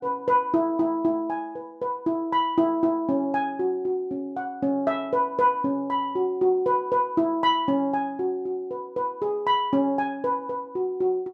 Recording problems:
none

